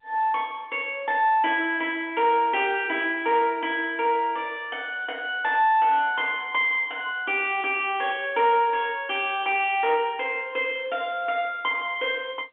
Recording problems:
phone line; 280 Hz to 3.4 kHz, G.711
distortion; soft clipping, signal-to-distortion ratio 10 dB

